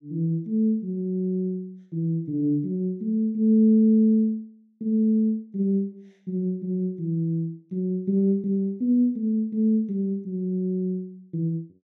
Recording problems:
none

